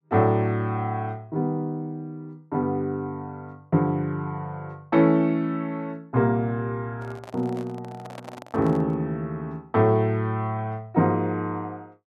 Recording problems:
microphone handling noise; from 7 to 9 s; peak -10 dB vs average level

